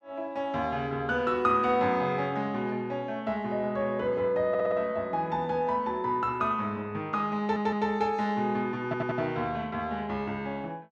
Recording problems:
stutter; at 4.5 s, at 7.5 s and at 9 s

